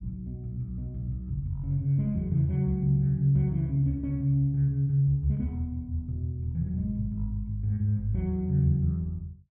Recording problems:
none

